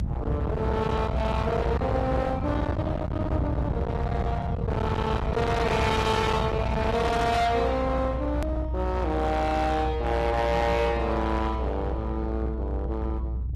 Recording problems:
lossy codec; Opus, log-spectral distance 2 dB, nothing above 13.1 kHz
distortion; hard clipping, signal-to-distortion ratio 8 dB
low-frequency rumble; below 390 Hz, strongest tone 62 Hz, SNR 3 dB
edit click; at 8.5 s

